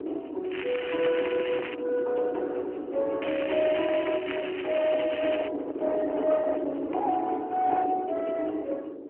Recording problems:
telephone audio; 260 Hz to 3.2 kHz, AMR-NB
distortion; hard clipping, signal-to-distortion ratio 16 dB
wind on the microphone; below 580 Hz, SNR 8 dB
crackle; from 0.5 to 1.5 s and from 3 to 5.5 s; loose cable, SNR 9 dB

